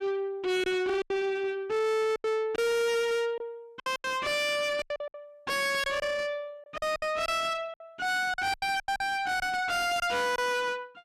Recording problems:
distortion; soft clipping, signal-to-distortion ratio 5 dB
lost packets; 10% of the sound replaced, filled with silence

